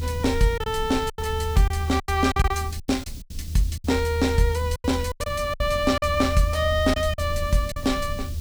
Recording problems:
background hiss; slope +7 dB per octave, SNR 19 dB
low-frequency rumble; below 82 Hz, strongest tone 78 Hz, SNR 6 dB
lost packets; 10% of the sound replaced, filled with silence

